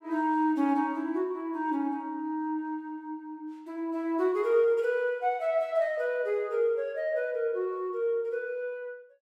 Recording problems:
none

